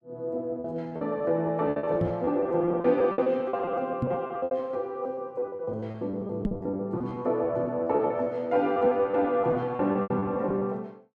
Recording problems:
packet loss; 19% of the sound replaced, filled with repeated pitch periods
microphone thump; at 2 s, at 4 s and at 6.5 s; peak +3 dB vs average level

